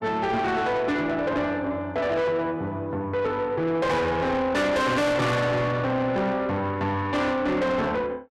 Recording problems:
distortion; soft clipping, signal-to-distortion ratio 6 dB

